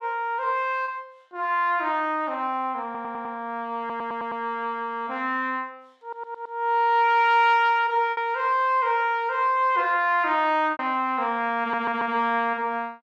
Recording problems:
lost packets; 1.7% of the sound replaced, filled with repeated pitch periods
audio stuttering; 4 times, first at 3 s

